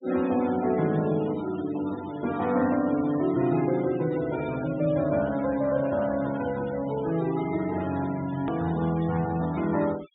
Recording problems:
treble missing; nothing above 4 kHz
noise reduction artefacts; signal-to-artefact ratio 17 dB
hard cut with a click; at 8.5 s

